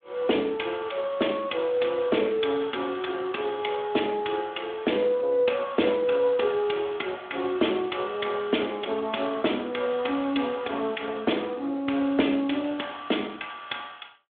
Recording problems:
telephone audio; 240 Hz to 3.6 kHz, Speex

